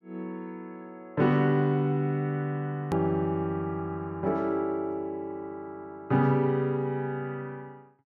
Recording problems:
hard cut with a click; at 3 s

